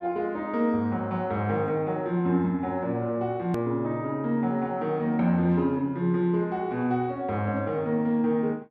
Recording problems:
click at an edit; at 3.5 s

